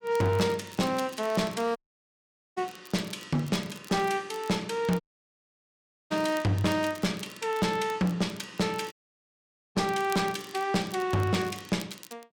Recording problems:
distorted audio; hard clipping, uneven, signal-to-distortion ratio 10 dB
crackle; vinyl, SNR 20 dB
audio cutting out; at 2 s for 1 s, at 5 s for 1 s and at 9 s for 1 s

